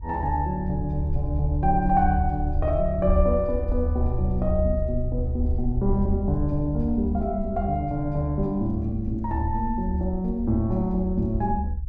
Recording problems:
rumble; below 74 Hz, SNR 3 dB

